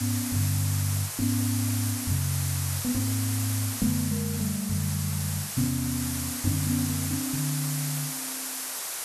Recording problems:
background hiss; SNR 2 dB

